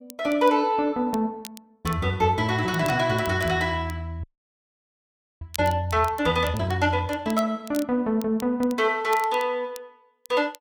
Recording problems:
crackling; vinyl, SNR 20 dB
audio freezing; at 4 s for 1 s

